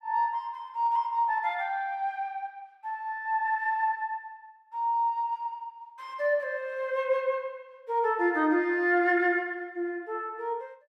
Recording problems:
none

